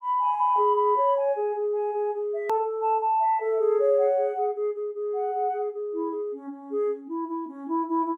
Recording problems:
hard cut with a click; at 2.5 s

